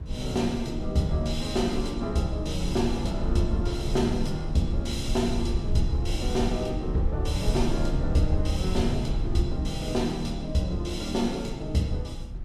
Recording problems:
low-frequency rumble; below 78 Hz, SNR 5 dB

